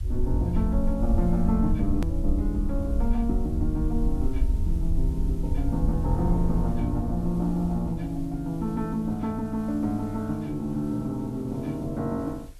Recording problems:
hiss; slope -1 dB per octave, SNR 27 dB
rumble; below 66 Hz, SNR 1 dB
hard cut with a click; at 2 s

